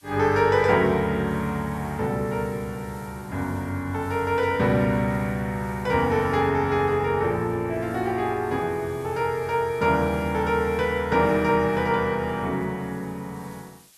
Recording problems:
background hiss; slope +1 dB per octave, SNR 27 dB

